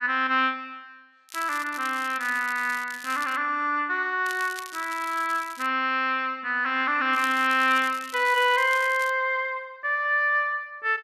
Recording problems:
crackling; from 1.5 to 3.5 s, from 4.5 to 5.5 s and from 7 to 9 s; loose cable, SNR 18 dB

